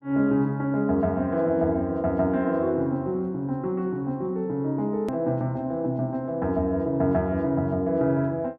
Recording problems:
edit click; at 5 s

